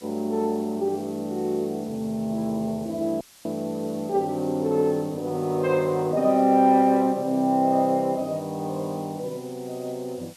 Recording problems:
hiss; slope +1 dB per octave, SNR 24 dB
audio cutting out; at 3 s

